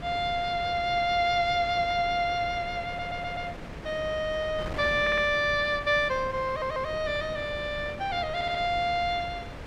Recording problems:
wind noise; below 870 Hz, SNR 13 dB
stutter; 4 times, first at 3 s

